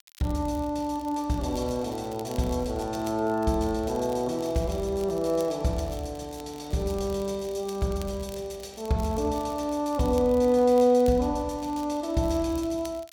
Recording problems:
crackling; vinyl, SNR 23 dB

